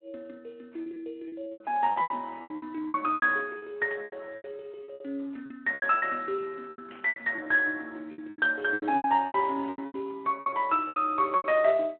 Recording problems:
phone line; 280 Hz to 3.3 kHz, Speex
lost packets; 18% of the sound replaced, filled with repeated pitch periods
static burst; at 4 s and at 7 s; peak -15 dB vs average level

